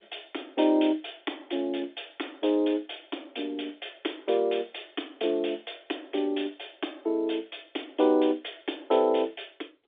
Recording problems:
phone line; 260 Hz to 3.6 kHz, G.711

